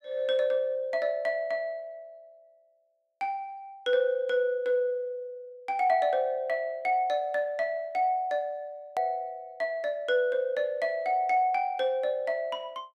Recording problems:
hard cut with a click; at 9 s

